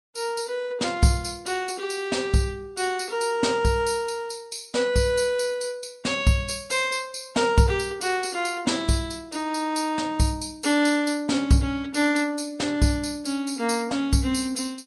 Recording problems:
lossy codec; Vorbis, log-spectral distance 5 dB, nothing above 11.3 kHz

